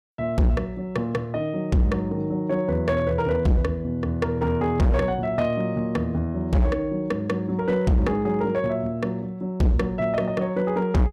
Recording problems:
distortion; hard clipping, signal-to-distortion ratio 6 dB

